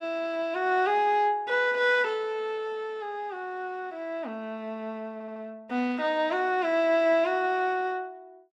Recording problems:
audio stuttering; at 5 s

